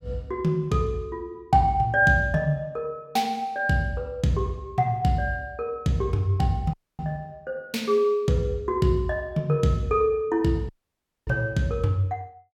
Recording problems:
dropout; at 6.5 s and at 11 s for 0.5 s

